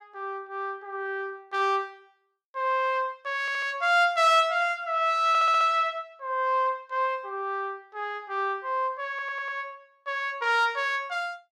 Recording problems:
stutter; at 3.5 s, at 5.5 s and at 9 s

